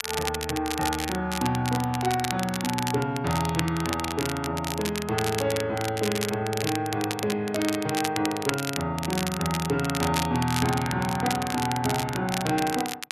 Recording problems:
crackling; vinyl, SNR 6 dB

